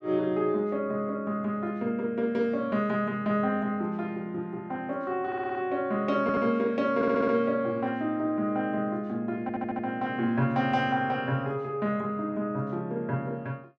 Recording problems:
stutter; 4 times, first at 5.5 s

